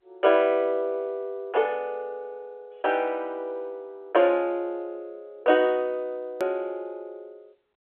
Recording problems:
phone line; 300 Hz to 3.3 kHz, G.711
hard cut with a click; at 6.5 s

